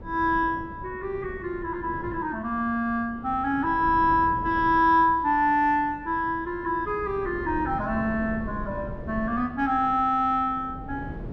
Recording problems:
wind on the microphone; below 290 Hz, SNR 15 dB

